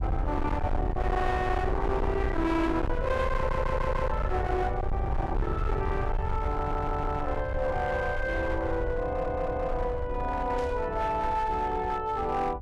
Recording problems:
distorted audio; hard clipping, uneven, signal-to-distortion ratio 8 dB
rumble; below 110 Hz, SNR 4 dB
stutter; at 3.5 s, at 6.5 s and at 9 s
burst of static; at 11 s; peak -14 dB vs average level

